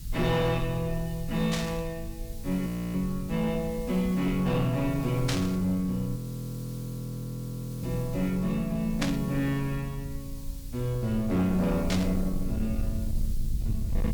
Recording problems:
distortion; soft clipping, signal-to-distortion ratio 12 dB
background hiss; slope +3 dB per octave, SNR 19 dB
low-frequency rumble; below 76 Hz, SNR 10 dB
burst of static; 4 times, first at 1.5 s; peak +3 dB vs average level
audio freezing; at 2.5 s and at 6 s for 1.5 s

